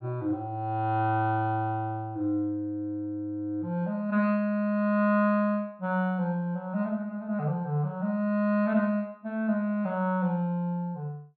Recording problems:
treble cut off; nothing above 4.4 kHz

